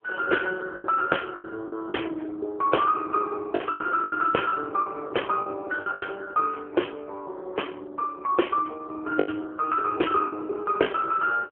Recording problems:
phone line; 280 Hz to 3.2 kHz, AMR-NB
lost packets; 7% of the sound replaced, filled with the last packet

